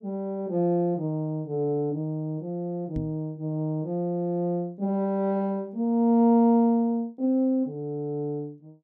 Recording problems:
microphone thump; at 3 s; peak -3 dB vs average level

